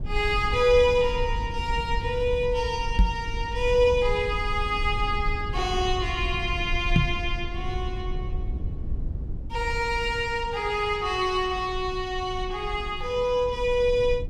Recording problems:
low-frequency rumble; below 76 Hz, SNR 8 dB
microphone bump; at 3 s and at 7 s; peak +9 dB vs average level

